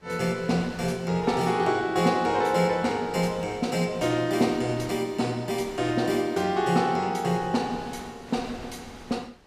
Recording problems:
wind noise; below 1.8 kHz, SNR 21 dB

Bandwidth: 15 kHz